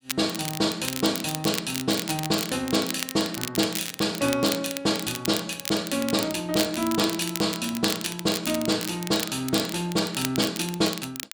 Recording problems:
crackle; vinyl, SNR 7 dB

